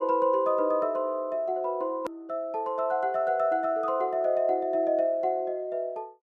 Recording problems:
click at an edit; at 2 s

